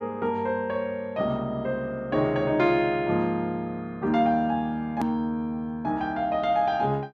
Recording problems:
click at an edit; at 5 s

